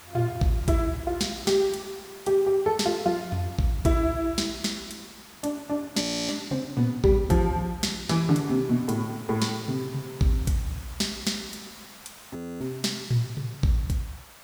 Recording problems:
hiss; SNR 20 dB
frozen audio; at 6 s and at 12 s

